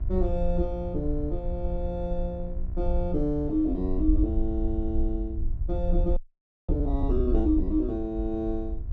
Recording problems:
electrical hum; 60 Hz, harmonics up to 1 kHz, SNR 18 dB
rumble; below 62 Hz, SNR 2 dB
frozen audio; at 6 s for 0.5 s

